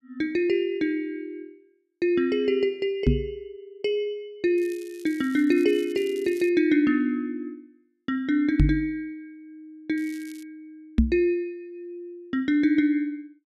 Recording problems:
knock on the microphone; at 3 s, at 8.5 s and at 11 s; peak +9 dB vs average level
crackling; from 4.5 to 6.5 s and at 10 s; loose cable, SNR 24 dB

